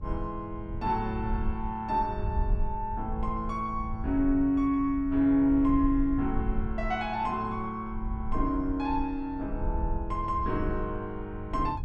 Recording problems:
low-frequency rumble; below 66 Hz, SNR 8 dB

